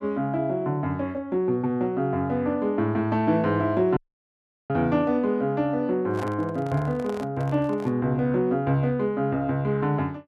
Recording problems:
dropout; at 4 s for 0.5 s
handling noise; from 6 to 8 s; peak -8 dB vs average level

